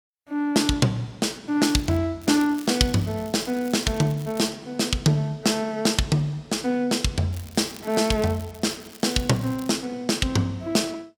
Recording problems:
crackle; at 1.5 s, from 2 to 4.5 s and from 7.5 to 9.5 s; loose cable, SNR 21 dB

